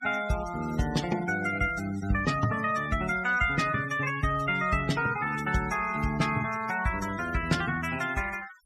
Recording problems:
noise reduction artefacts; signal-to-artefact ratio 15 dB

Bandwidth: 15.5 kHz